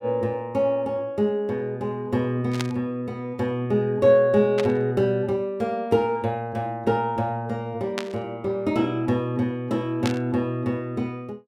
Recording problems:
static burst; 4 times, first at 2.5 s; peak -1 dB vs average level

